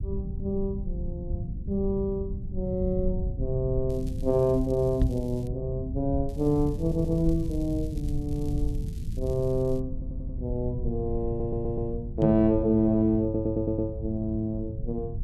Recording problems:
low-frequency rumble; below 110 Hz, SNR 7 dB
crackle; from 4 to 5.5 s and from 6.5 to 10 s; loose cable, SNR 27 dB
knock on the microphone; at 5 s and at 12 s; peak +7 dB vs average level
audio stuttering; 4 times, first at 7 s

